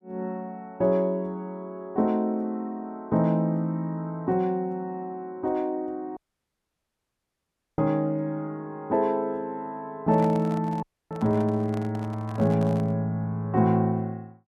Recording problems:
audio cutting out; at 6 s for 1.5 s and at 11 s
handling noise; from 10 to 13 s; peak -8 dB vs average level

